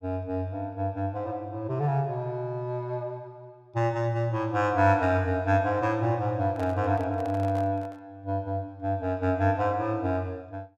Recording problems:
handling noise; from 6.5 to 8 s; peak -9 dB vs average level

